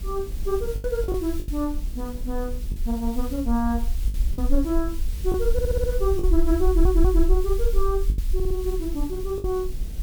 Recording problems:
background hiss; slope +2 dB per octave, SNR 16 dB
low-frequency rumble; below 50 Hz, SNR 1 dB
wind noise; below 220 Hz, SNR 17 dB
lost packets; 5% of the sound replaced, filled with the last packet
stutter; at 5.5 s, at 6.5 s and at 8.5 s

